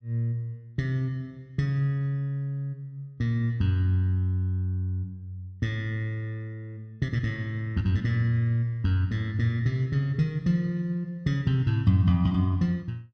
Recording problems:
none

